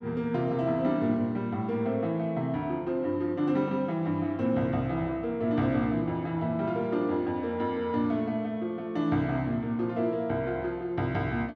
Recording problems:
none

